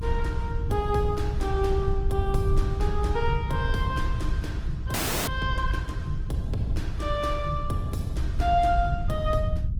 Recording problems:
lossy compression; Opus, log-spectral distance 2 dB, nothing above 19 kHz
rumble; below 90 Hz, SNR 0 dB
audio freezing; at 5 s

